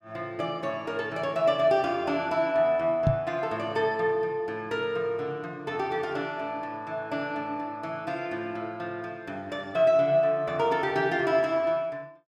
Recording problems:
microphone bump; at 3 s; peak +6 dB vs average level

